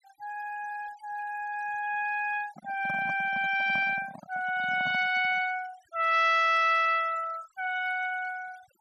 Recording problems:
denoising artefacts; signal-to-artefact ratio 20 dB
microphone handling noise; from 2.5 to 5.5 s; peak -10 dB vs average level

